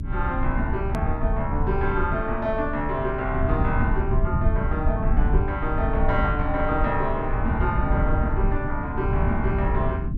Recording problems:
rumble; below 100 Hz, SNR 0 dB
hard cut with a click; at 1 s

